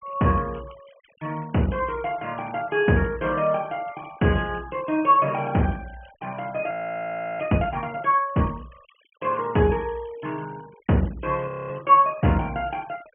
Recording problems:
treble missing; nothing above 3.1 kHz
denoising artefacts; signal-to-artefact ratio 25 dB
audio freezing; at 6.5 s for 0.5 s and at 11 s

